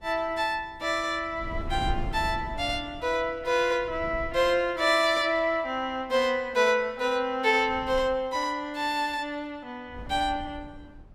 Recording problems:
wind noise; below 120 Hz, SNR 14 dB

